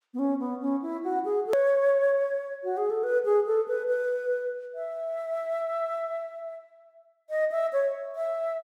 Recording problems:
edit click; at 1.5 s

